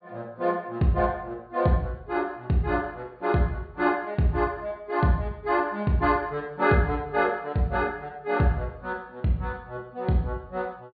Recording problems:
treble missing; nothing above 4.7 kHz

